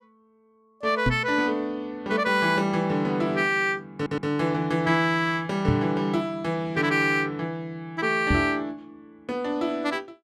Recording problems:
microphone bump; at 1 s, at 5.5 s and at 8.5 s; peak +4 dB vs average level
stutter; at 4 s

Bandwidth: 14.5 kHz